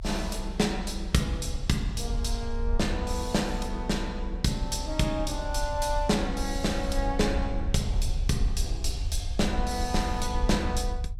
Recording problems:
low-frequency rumble; below 62 Hz, strongest tone 34 Hz, SNR 4 dB

